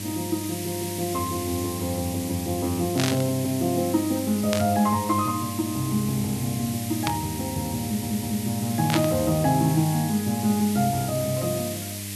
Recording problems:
hum; 50 Hz, harmonics up to 700 Hz, SNR 11 dB
background hiss; SNR 8 dB
static burst; 4 times, first at 3 s; peak +4 dB vs average level
audio stuttering; at 8 s

